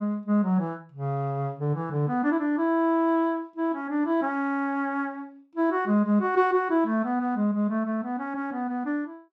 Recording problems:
none

